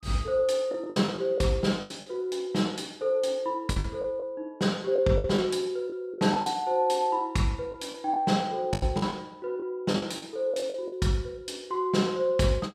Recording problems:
packet loss; 8% of the sound replaced, filled with the last packet

